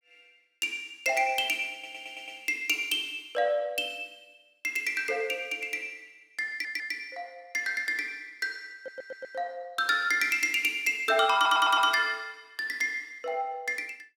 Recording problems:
stutter; 4 times, first at 1.5 s

